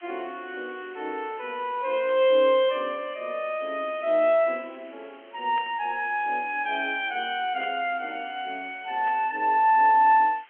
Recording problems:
telephone audio; 220 Hz to 3.3 kHz, G.711
hiss; SNR 27 dB
static burst; 4 times, first at 2 s; peak -15 dB vs average level

